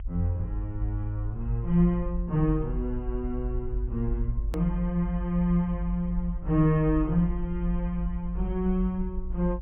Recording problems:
low-pass filter; nothing above 3.2 kHz
rumble; below 50 Hz, strongest tone 48 Hz, SNR 6 dB
edit click; at 4.5 s

